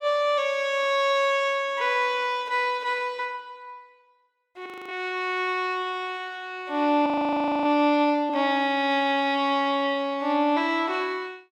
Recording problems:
audio freezing; at 4.5 s and at 7 s for 0.5 s

